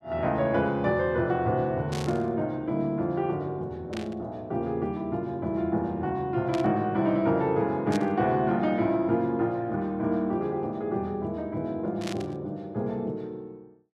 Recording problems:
static burst; 5 times, first at 2 s; peak -5 dB vs average level

